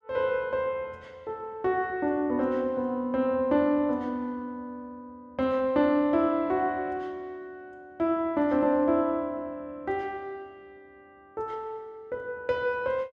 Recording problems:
none

